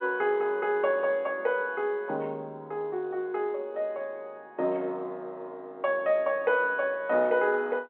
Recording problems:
phone line; 240 Hz to 3.9 kHz, G.711

